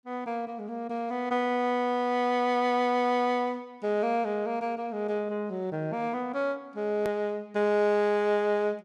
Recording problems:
hard cut with a click; at 7 s

